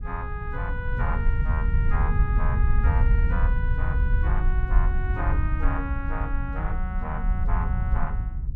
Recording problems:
low-frequency rumble; below 72 Hz, SNR -8 dB

